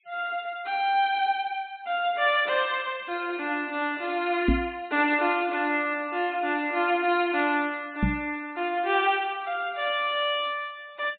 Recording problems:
low-pass filter; nothing above 4 kHz
denoising artefacts; signal-to-artefact ratio 28 dB
microphone bump; at 4.5 s and at 8 s; peak +6 dB vs average level

